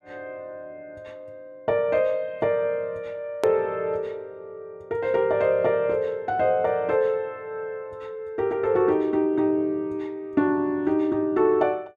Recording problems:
edit click; at 3.5 s

